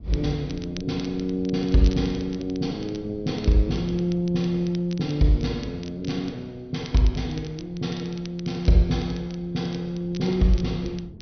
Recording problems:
treble missing; nothing above 6.1 kHz
wind noise; below 190 Hz, SNR 20 dB
crackling; vinyl, SNR 21 dB

